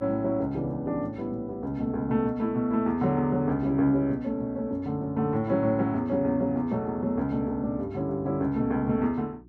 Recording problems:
hum; 60 Hz, harmonics up to 360 Hz, SNR 25 dB

